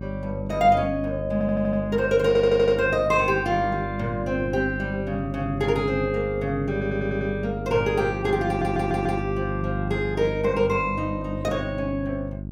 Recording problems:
hum; 50 Hz, harmonics up to 600 Hz, SNR 8 dB
stutter; 4 times, first at 1.5 s

